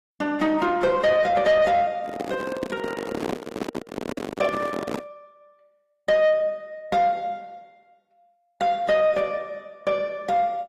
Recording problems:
codec artefacts; AAC, log-spectral distance 2 dB, nothing above 13.8 kHz
distorted audio; soft clipping, signal-to-distortion ratio 10 dB
microphone handling noise; from 2 to 5 s; peak -2 dB vs average level

